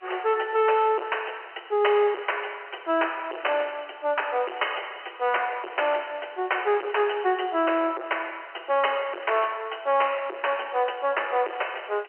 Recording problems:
telephone audio; 300 Hz to 3.1 kHz, G.711
distortion; soft clipping, signal-to-distortion ratio 7 dB
hiss; SNR 29 dB

